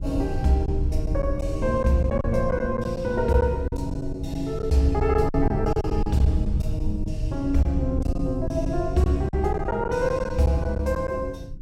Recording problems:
rumble; below 98 Hz, SNR 6 dB
packet loss; 8% of the sound replaced, filled with silence

